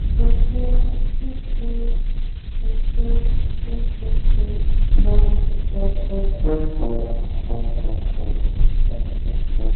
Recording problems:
codec artefacts; Opus, log-spectral distance 3 dB
hum; 50 Hz, harmonics up to 400 Hz, SNR 16 dB
background hiss; SNR 17 dB
rumble; below 42 Hz, strongest tone 28 Hz, SNR -8 dB
microphone bump; at 5 s and at 8.5 s; peak +9 dB vs average level

